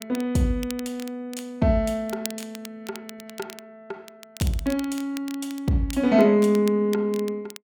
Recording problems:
crackle; vinyl, SNR 18 dB

